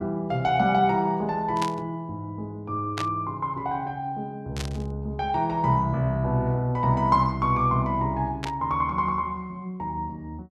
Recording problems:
static burst; 4 times, first at 1.5 s; peak -2 dB vs average level

